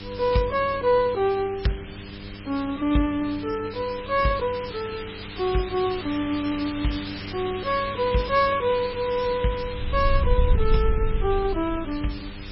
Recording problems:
lossy codec; MP3, log-spectral distance 8 dB, nothing above 5.3 kHz
electrical hum; 50 Hz, harmonics up to 1.1 kHz, SNR 15 dB
background hiss; SNR 13 dB
wind noise; below 68 Hz, SNR 3 dB

